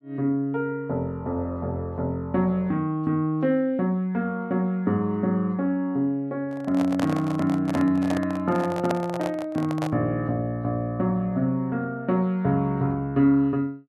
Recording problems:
microphone handling noise; from 6.5 to 10 s; peak 0 dB vs average level

